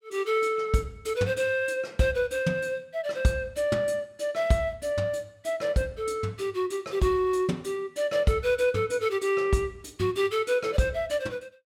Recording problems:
none

